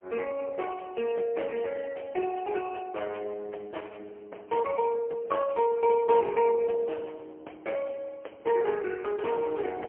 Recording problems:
telephone audio; 300 Hz to 3.1 kHz, AMR-NB, then MP3

